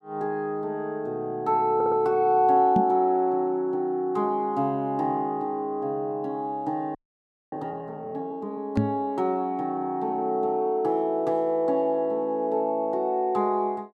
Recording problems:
audio stuttering; at 2 s
microphone thump; at 3 s and at 9 s; peak +5 dB vs average level
frozen audio; at 7 s for 0.5 s

